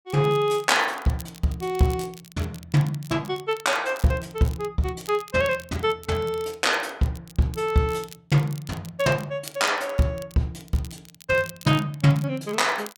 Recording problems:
crackle; vinyl, SNR 21 dB

